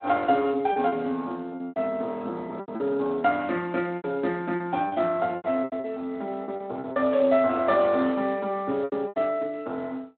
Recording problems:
phone line; 220 Hz to 4 kHz, Speex
packet loss; 10% of the sound replaced, filled with repeated pitch periods

